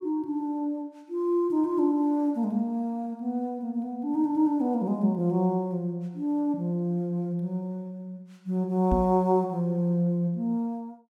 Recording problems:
microphone bump; at 9 s; peak +3 dB vs average level

